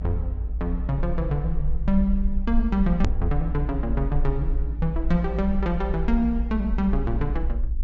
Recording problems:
treble missing; nothing above 8 kHz
hum; 50 Hz, harmonics up to 800 Hz, SNR 22 dB
rumble; below 56 Hz, SNR 2 dB
edit click; at 3 s

